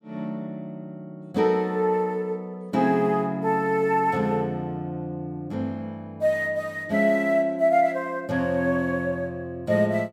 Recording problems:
none

